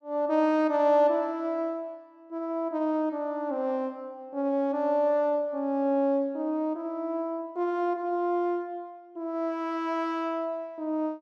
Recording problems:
none

